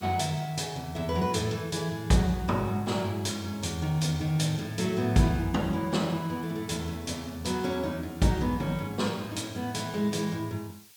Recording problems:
background hiss; slope +4 dB per octave, SNR 23 dB

